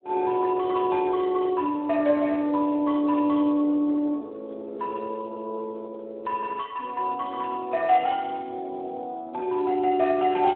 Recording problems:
telephone audio; 240 Hz to 2.8 kHz, Speex

